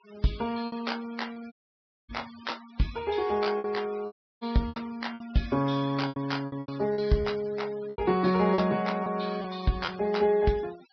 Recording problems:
treble cut off; nothing above 5.5 kHz
noise reduction artefacts; signal-to-artefact ratio 19 dB
lost packets; 9% of the sound replaced, filled with repeated pitch periods
audio cutting out; at 1.5 s for 0.5 s and at 4 s

